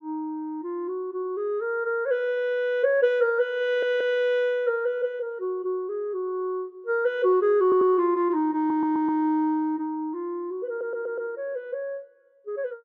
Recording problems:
stutter; 4 times, first at 3.5 s

